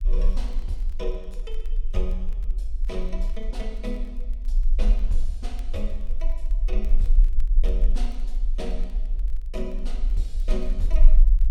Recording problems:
rumble; below 36 Hz, strongest tone 22 Hz, SNR -10 dB
crackling; vinyl, SNR 25 dB

